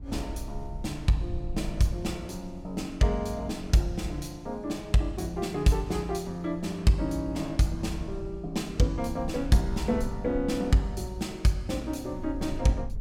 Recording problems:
rumble; below 74 Hz, SNR 14 dB

